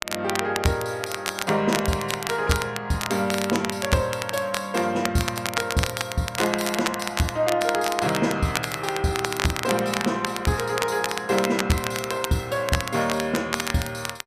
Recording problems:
crackle; vinyl, SNR 5 dB

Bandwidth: 14.5 kHz